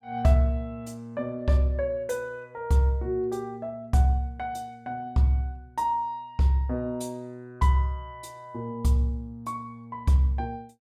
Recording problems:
none

